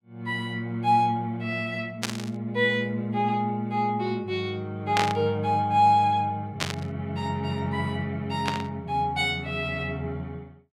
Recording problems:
static burst; 4 times, first at 2 s; peak +4 dB vs average level

